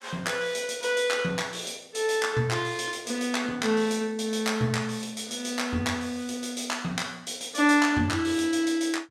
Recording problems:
none

